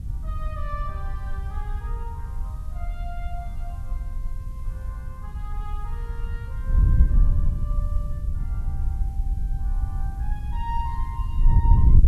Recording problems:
hiss; slope -2 dB per octave, SNR 20 dB
wind noise; below 72 Hz, SNR -13 dB

